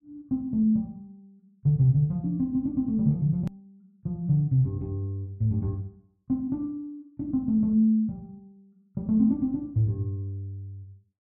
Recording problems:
click at an edit; at 3.5 s

